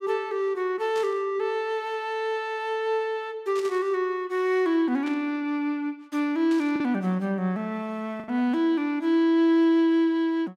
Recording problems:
packet loss; 1.1% of the sound replaced, filled with the last packet
burst of static; 4 times, first at 1 s; peak -12 dB vs average level

